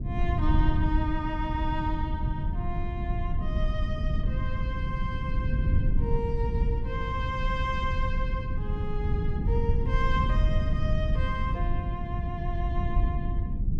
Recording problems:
low-frequency rumble; below 98 Hz, SNR -5 dB

